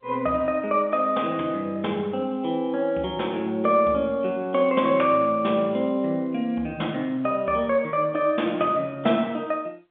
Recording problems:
phone line; 170 Hz to 3.6 kHz, G.711

